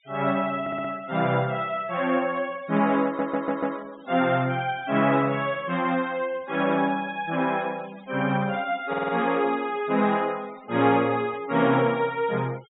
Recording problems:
low-pass filter; nothing above 4 kHz
denoising artefacts; signal-to-artefact ratio 22 dB
audio stuttering; at 0.5 s, at 3 s and at 9 s

